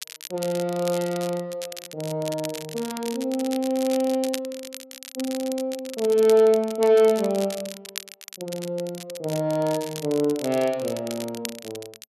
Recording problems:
crackling; vinyl, SNR 13 dB

